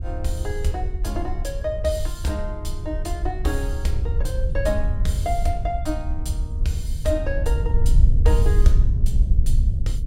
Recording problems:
rumble; below 68 Hz, SNR -4 dB

